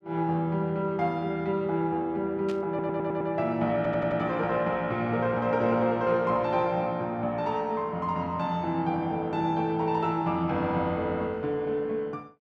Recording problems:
burst of static; at 2.5 s; peak -12 dB vs average level
stutter; at 2.5 s and at 4 s

